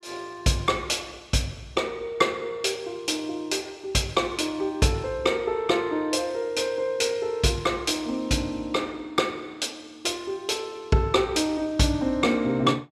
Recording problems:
none

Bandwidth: 14.5 kHz